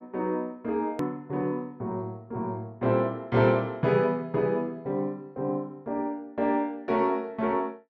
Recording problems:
edit click; at 1 s

